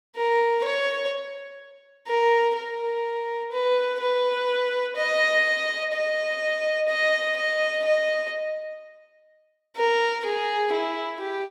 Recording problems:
none

